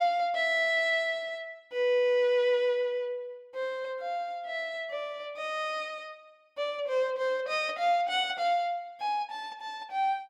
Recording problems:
none

